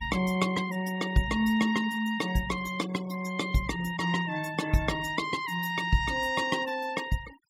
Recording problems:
denoising artefacts; signal-to-artefact ratio 16 dB

